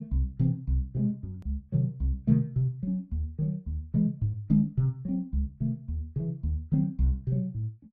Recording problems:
edit click; at 1.5 s

